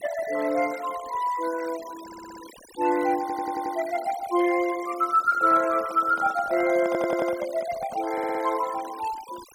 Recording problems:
denoising artefacts; signal-to-artefact ratio 17 dB
audio stuttering; 4 times, first at 2 s
microphone handling noise; from 5 to 8 s; peak -7 dB vs average level

